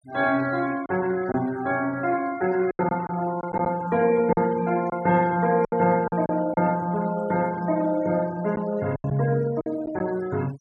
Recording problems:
noise reduction artefacts; signal-to-artefact ratio 20 dB
lost packets; 6% of the sound replaced, filled with silence

